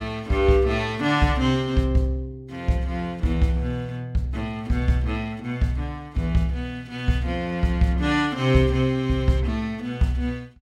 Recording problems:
none

